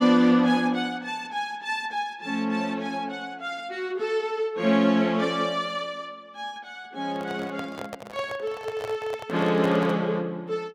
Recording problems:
microphone handling noise; from 7 to 10 s; peak -4 dB vs average level

